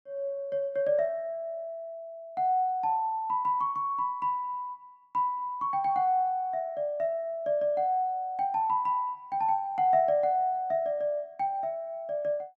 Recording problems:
none

